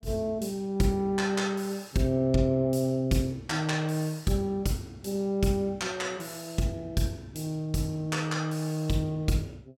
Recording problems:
none

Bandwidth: 16.5 kHz